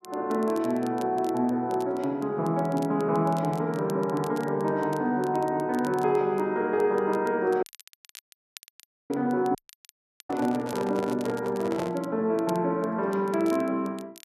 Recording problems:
crackling; vinyl, SNR 24 dB
dropout; at 7.5 s for 1.5 s and at 9.5 s for 0.5 s
microphone handling noise; from 10 to 12 s; peak -3 dB vs average level

